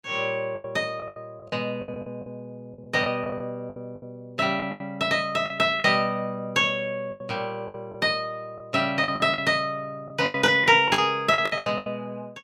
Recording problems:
packet loss; 13% of the sound replaced, filled with the last packet

